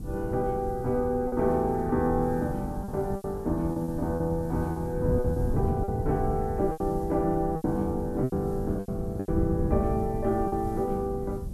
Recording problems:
background hiss; slope +4 dB per octave, SNR 28 dB
wind on the microphone; below 170 Hz, SNR 6 dB
lost packets; 8% of the sound replaced, filled with repeated pitch periods

